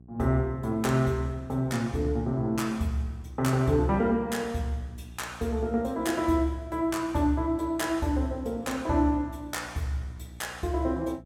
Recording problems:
hum; 60 Hz, harmonics up to 660 Hz, SNR 21 dB

